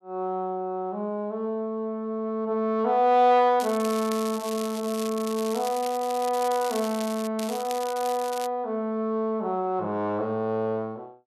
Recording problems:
crackle; from 3.5 to 7.5 s and from 7.5 to 8.5 s; loose cable, SNR 13 dB

